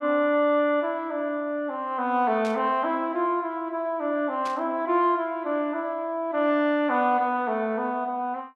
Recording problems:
burst of static; at 2.5 s and at 4.5 s; peak -10 dB vs average level

